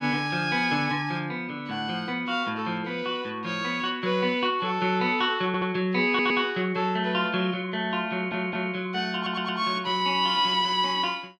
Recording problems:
stutter; 4 times, first at 5.5 s

